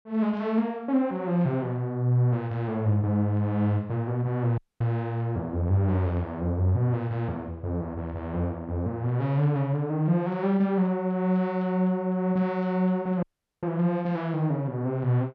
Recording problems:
audio cutting out; at 4.5 s and at 13 s

